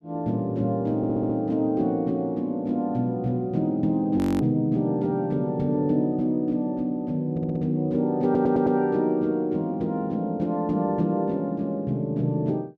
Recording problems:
stutter; at 1 s, at 7.5 s and at 8 s
frozen audio; at 4 s

